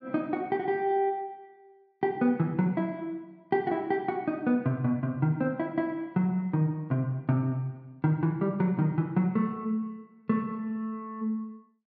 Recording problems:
treble missing; nothing above 5.8 kHz

